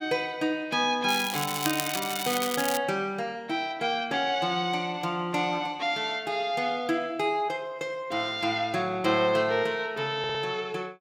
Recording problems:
crackle; from 1 to 3 s; loose cable, SNR 4 dB
stutter; at 10 s

